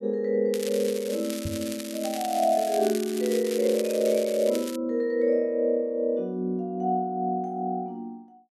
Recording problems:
crackle; from 0.5 to 5 s; loose cable, SNR 12 dB
knock on the microphone; at 1.5 s; peak -3 dB vs average level

